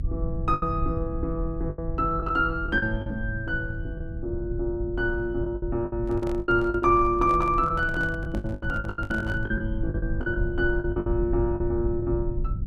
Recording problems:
low-frequency rumble; below 98 Hz, SNR 7 dB
lost packets; 12% of the sound replaced, filled with the last packet
handling noise; from 6 to 9.5 s; peak -8 dB vs average level

